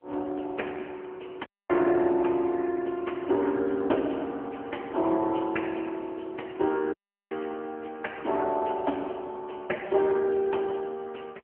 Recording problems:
telephone audio; 260 Hz to 3.9 kHz, AMR-NB
audio cutting out; at 1.5 s and at 7 s

